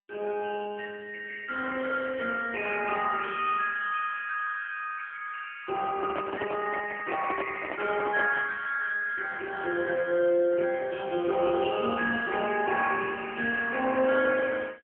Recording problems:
telephone audio; 240 Hz to 3.1 kHz, AMR-NB
microphone handling noise; from 6 to 8.5 s; peak 0 dB vs average level

